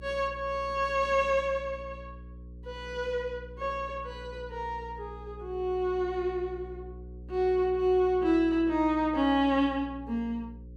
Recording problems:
hum; 60 Hz, harmonics up to 540 Hz, SNR 17 dB

